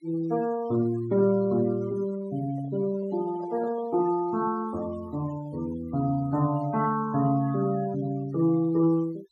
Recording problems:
noise reduction artefacts; signal-to-artefact ratio 21 dB
microphone handling noise; from 2.5 to 4 s; peak -12 dB vs average level

